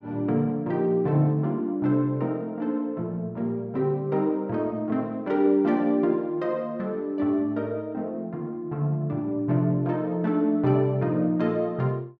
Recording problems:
none

